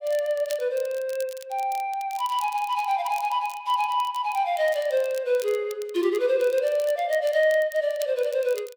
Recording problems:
crackling; vinyl, SNR 20 dB

